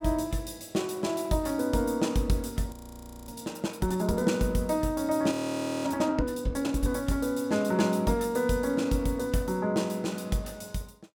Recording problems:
audio freezing; at 2.5 s for 0.5 s and at 5.5 s for 0.5 s

